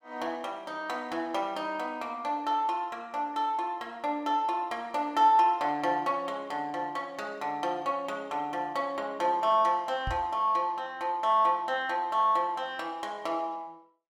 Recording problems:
knock on the microphone; at 10 s; peak -2 dB vs average level

